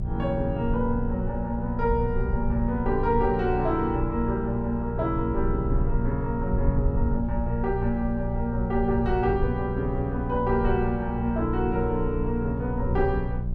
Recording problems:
hum; 60 Hz, harmonics up to 600 Hz, SNR 4 dB
rumble; below 68 Hz, strongest tone 26 Hz, SNR 6 dB

